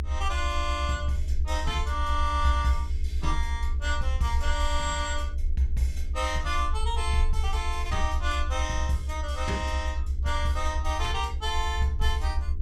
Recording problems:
electrical hum; 60 Hz, harmonics up to 420 Hz, SNR 21 dB
rumble; below 70 Hz, SNR 0 dB

